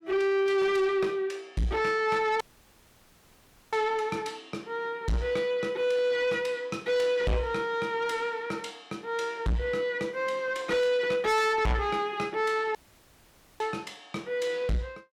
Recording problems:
distorted audio; soft clipping, signal-to-distortion ratio 7 dB
dropout; at 2.5 s for 1.5 s and at 13 s for 1 s

